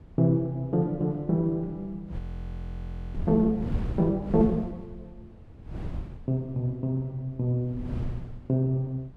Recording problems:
wind on the microphone; below 150 Hz, SNR 10 dB
audio freezing; at 2 s for 1 s

